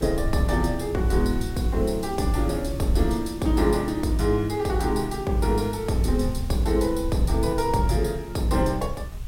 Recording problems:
hiss; slope -2 dB per octave, SNR 23 dB
low-frequency rumble; below 86 Hz, SNR 10 dB

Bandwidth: 16 kHz